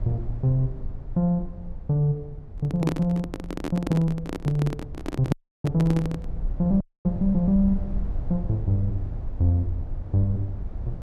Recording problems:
low-frequency rumble; below 72 Hz, SNR 10 dB
microphone handling noise; from 2.5 to 6.5 s; peak +4 dB vs average level
dropout; at 5.5 s and at 7 s

